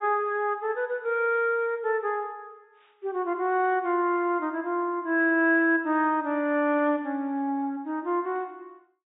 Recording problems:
treble missing; nothing above 4 kHz

